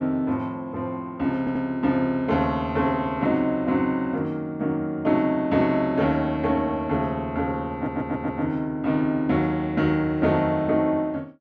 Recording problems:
audio stuttering; at 1.5 s and at 7.5 s

